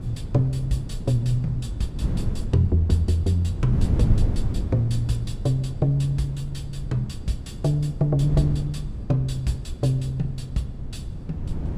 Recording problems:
wind on the microphone; below 140 Hz, SNR 6 dB

